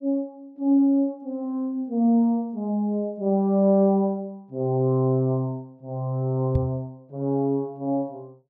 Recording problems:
microphone bump; at 6.5 s; peak +2 dB vs average level

